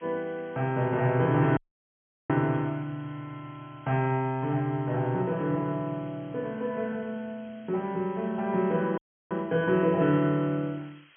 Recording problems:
treble cut off; nothing above 3.3 kHz
hiss; SNR 29 dB
dropout; at 1.5 s for 0.5 s and at 9 s

